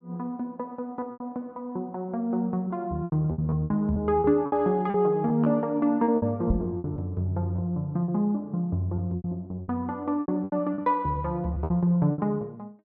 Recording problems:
treble cut off; nothing above 7.4 kHz
packet loss; 12% of the sound replaced, filled with repeated pitch periods
microphone thump; at 6.5 s; peak +6 dB vs average level

